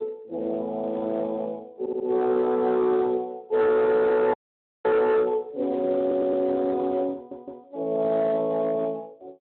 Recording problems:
telephone audio; 990 Hz to 2.2 kHz, Speex
distorted audio; hard clipping, signal-to-distortion ratio 10 dB
stutter; at 2 s, at 6 s and at 7 s
audio cutting out; at 4.5 s for 0.5 s

